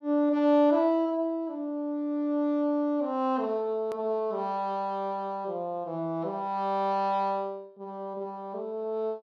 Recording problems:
click at an edit; at 4 s

